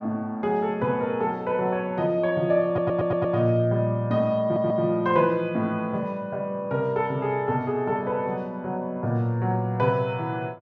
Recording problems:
stutter; at 2.5 s and at 4.5 s

